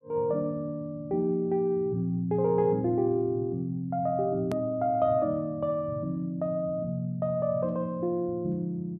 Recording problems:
click at an edit; at 4.5 s

